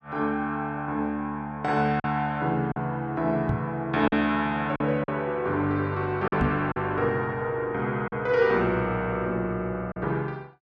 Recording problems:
lost packets; 3% of the sound replaced, filled with silence
microphone bump; at 3.5 s and at 6.5 s; peak +3 dB vs average level

